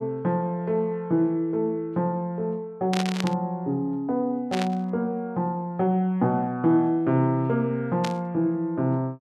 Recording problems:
burst of static; at 3 s, at 4.5 s and at 8 s; peak -1 dB vs average level

